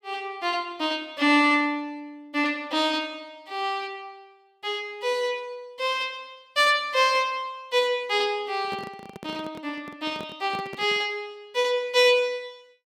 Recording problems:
handling noise; from 8.5 to 11 s; peak -9 dB vs average level

